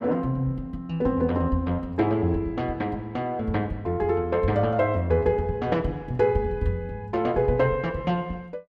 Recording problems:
none

